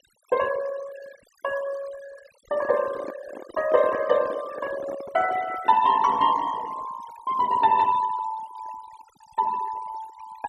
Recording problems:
noise reduction artefacts; signal-to-artefact ratio 17 dB
microphone handling noise; from 2.5 to 6 s; peak -8 dB vs average level

